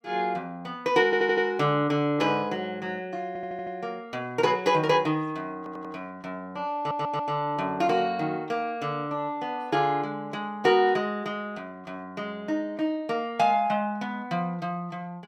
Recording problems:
stutter; 4 times, first at 1 s

